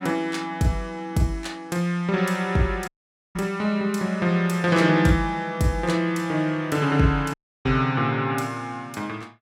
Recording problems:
dropout; at 3 s and at 7.5 s

